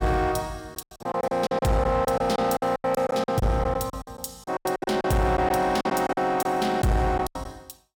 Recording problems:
distorted audio; soft clipping, signal-to-distortion ratio 11 dB
packet loss; 15% of the sound replaced, filled with silence

